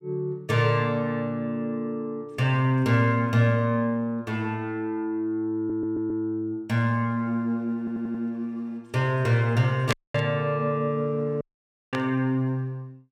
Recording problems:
stutter; at 5.5 s and at 8 s
static burst; at 10 s and at 12 s; peak +1 dB vs average level
dropout; at 10 s and at 11 s for 0.5 s

